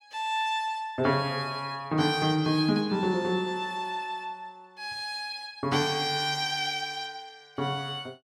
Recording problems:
none

